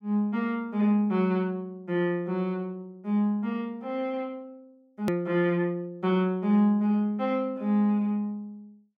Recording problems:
edit click; at 5 s

